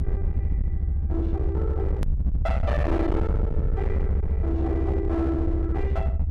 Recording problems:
distorted audio; hard clipping, uneven, signal-to-distortion ratio 6 dB
low-frequency rumble; below 80 Hz, SNR -3 dB
edit click; at 2 s

